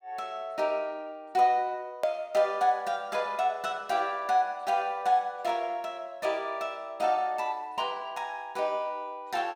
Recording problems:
edit click; at 2 s

